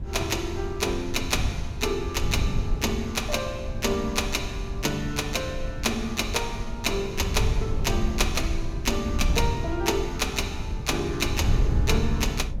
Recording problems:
wind on the microphone; below 100 Hz, SNR 3 dB

